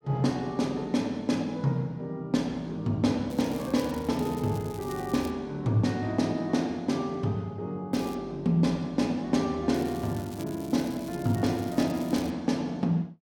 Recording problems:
crackle; from 3.5 to 5.5 s, at 8 s and from 9.5 to 12 s; loose cable, SNR 20 dB

